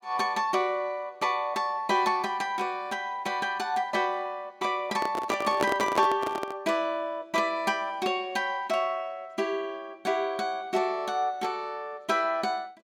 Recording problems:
handling noise; from 5 to 6.5 s; peak +4 dB vs average level

